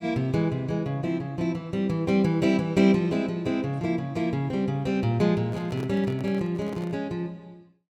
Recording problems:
microphone handling noise; from 5.5 to 7 s; peak -7 dB vs average level

